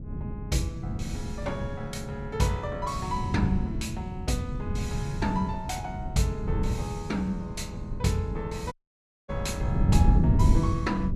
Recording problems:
wind noise; below 160 Hz, SNR -2 dB
audio cutting out; at 8.5 s for 0.5 s

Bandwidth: 14.5 kHz